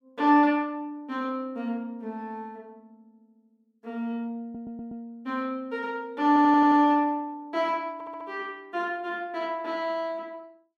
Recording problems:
audio stuttering; at 4.5 s, at 6.5 s and at 8 s

